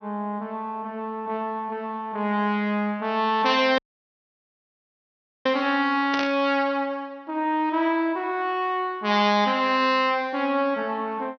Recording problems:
treble missing; nothing above 6.1 kHz
dropout; at 4 s for 1.5 s
burst of static; at 6 s; peak -2 dB vs average level

